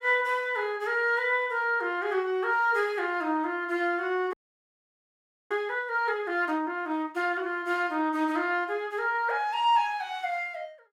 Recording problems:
audio freezing; at 4.5 s for 1 s

